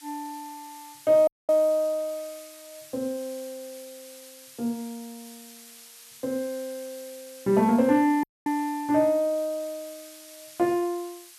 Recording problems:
background hiss; slope +4 dB per octave, SNR 20 dB
audio cutting out; at 1.5 s and at 8 s

